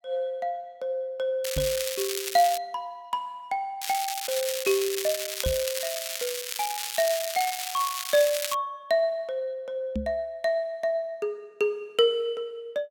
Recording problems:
crackle; from 1.5 to 2.5 s and from 4 to 8.5 s; loose cable, SNR 3 dB
microphone thump; at 1.5 s, at 5.5 s and at 10 s; peak +2 dB vs average level

